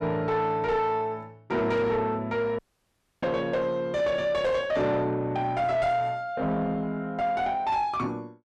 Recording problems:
distortion; soft clipping, signal-to-distortion ratio 10 dB
dropout; at 2.5 s for 0.5 s

